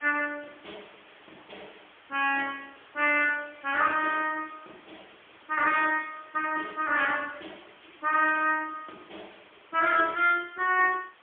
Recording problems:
phone line; 240 Hz to 3.4 kHz, AMR-NB, then MP3
background hiss; SNR 27 dB

